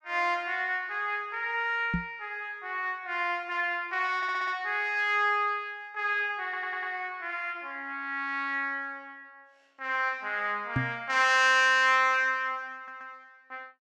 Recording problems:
knock on the microphone; at 2 s and at 11 s; peak +2 dB vs average level
stutter; at 4 s, at 6.5 s and at 13 s

